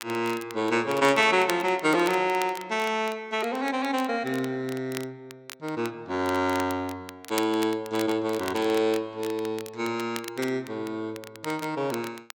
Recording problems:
crackle; vinyl, SNR 15 dB

